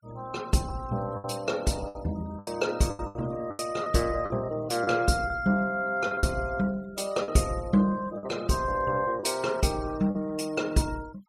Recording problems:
denoising artefacts; signal-to-artefact ratio 22 dB
lost packets; 8% of the sound replaced, filled with the last packet

